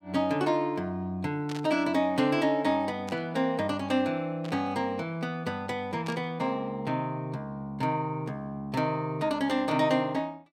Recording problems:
static burst; 4 times, first at 1.5 s; peak -8 dB vs average level

